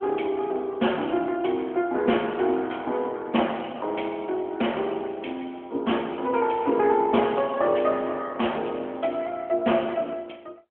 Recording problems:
telephone audio; 220 Hz to 3.3 kHz, AMR-NB

